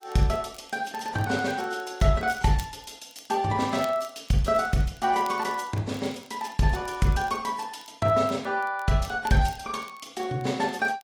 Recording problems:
codec artefacts; AAC, log-spectral distance 3 dB
crackling; vinyl, SNR 25 dB

